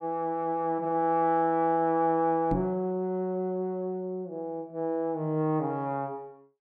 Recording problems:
microphone bump; at 2.5 s; peak +2 dB vs average level

